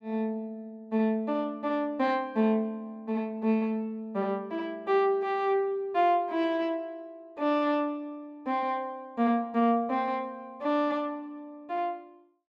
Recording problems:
none

